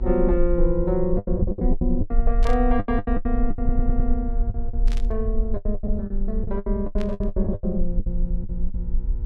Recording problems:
electrical hum; 60 Hz, harmonics up to 960 Hz, SNR 17 dB
rumble; below 42 Hz, strongest tone 20 Hz, SNR 1 dB
lost packets; 18% of the sound replaced, filled with the last packet
burst of static; at 2.5 s, at 5 s and at 7 s; peak -7 dB vs average level
audio stuttering; at 3.5 s

